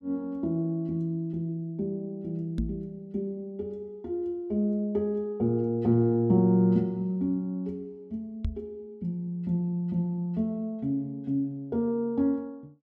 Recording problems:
knock on the microphone; at 2.5 s and at 8.5 s; peak +2 dB vs average level

